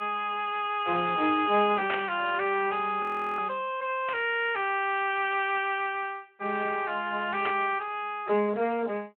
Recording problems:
telephone audio; 260 Hz to 3.3 kHz, Speex
static burst; at 2 s, at 4 s and at 7.5 s; peak 0 dB vs average level
audio freezing; at 3 s

